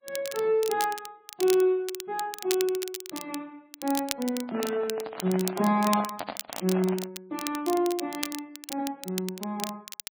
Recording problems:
lossy compression; MP3, then MP3, log-spectral distance 2 dB
crackling; vinyl, SNR 9 dB
microphone handling noise; from 4.5 to 7 s; peak -2 dB vs average level

